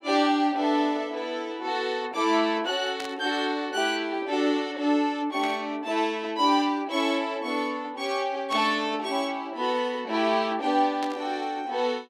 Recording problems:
burst of static; 4 times, first at 3 s; peak -7 dB vs average level

